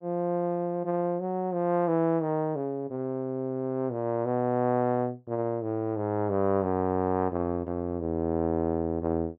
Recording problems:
none

